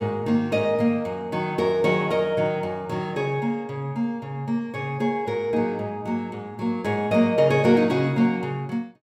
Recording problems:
none

